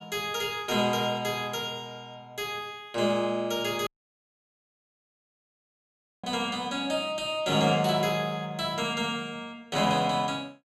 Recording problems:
audio cutting out; at 4 s for 2.5 s

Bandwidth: 15.5 kHz